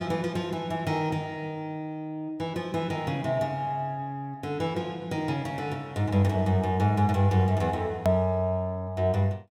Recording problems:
click at an edit; at 8 s

